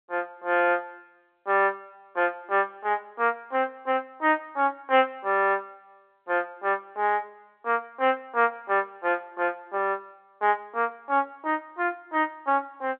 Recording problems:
telephone audio; 240 Hz to 3.5 kHz, G.711

